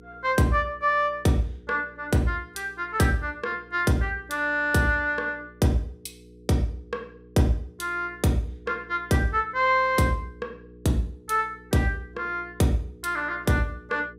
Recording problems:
hum; 60 Hz, harmonics up to 480 Hz, SNR 24 dB

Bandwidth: 15.5 kHz